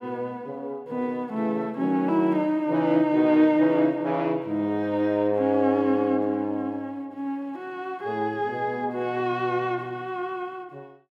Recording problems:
none

